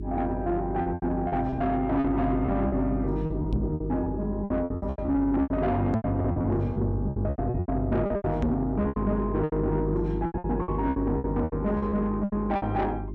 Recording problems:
distortion; soft clipping, signal-to-distortion ratio 10 dB
hum; 50 Hz, harmonics up to 400 Hz, SNR 6 dB
lost packets; 17% of the sound replaced, filled with repeated pitch periods
microphone bump; at 3.5 s, at 6 s and at 8.5 s; peak +6 dB vs average level

